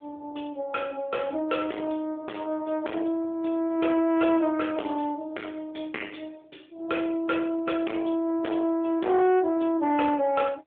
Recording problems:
phone line; 240 Hz to 3.5 kHz, AMR-NB
distorted audio; soft clipping, signal-to-distortion ratio 8 dB

